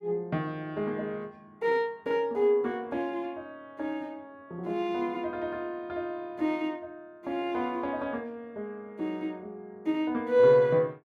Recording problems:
none

